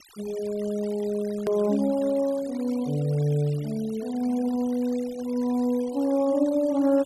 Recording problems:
noise reduction artefacts; signal-to-artefact ratio 21 dB
edit click; at 1.5 s

